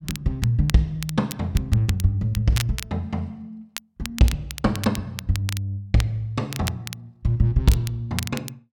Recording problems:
crackling; vinyl, SNR 12 dB

